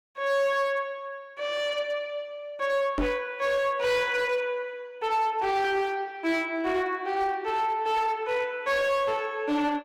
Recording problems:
distortion; hard clipping, uneven, signal-to-distortion ratio 11 dB
microphone thump; at 3 s; peak +2 dB vs average level

